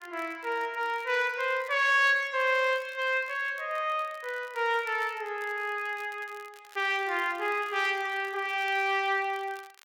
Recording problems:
crackling; vinyl, SNR 26 dB

